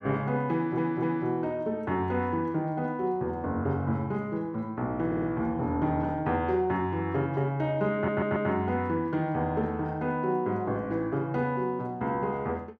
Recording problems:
audio stuttering; at 0.5 s, at 5 s and at 8 s

